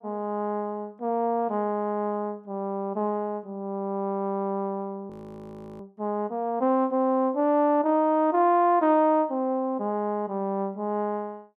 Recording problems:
audio freezing; at 5 s for 0.5 s

